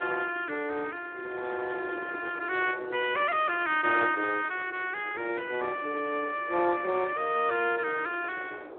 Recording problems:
telephone audio; 260 Hz to 3.4 kHz, Speex
wind noise; below 700 Hz, SNR 16 dB

